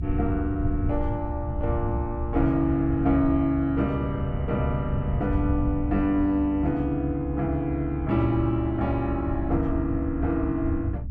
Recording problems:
rumble; below 100 Hz, SNR 5 dB

